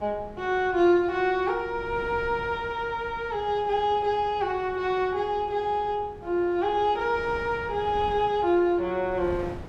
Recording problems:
wind on the microphone; below 410 Hz, SNR 19 dB

